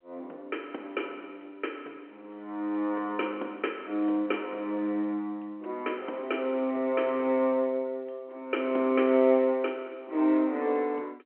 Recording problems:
phone line; 240 Hz to 3.4 kHz, G.711

